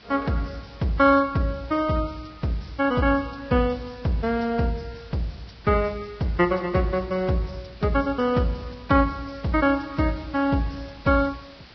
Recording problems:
lossy codec; Vorbis, log-spectral distance 8 dB, nothing above 5.5 kHz
background hiss; slope -1 dB per octave, SNR 24 dB

